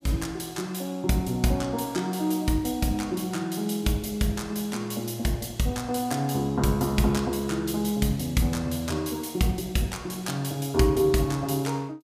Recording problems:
none

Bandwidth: 15.5 kHz